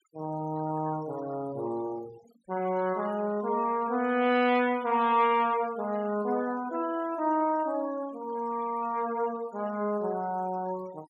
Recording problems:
noise reduction artefacts; signal-to-artefact ratio 21 dB

